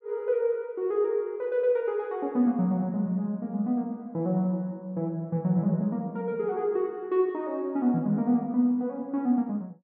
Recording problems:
none

